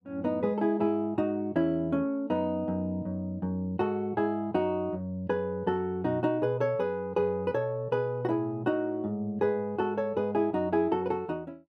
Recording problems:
none

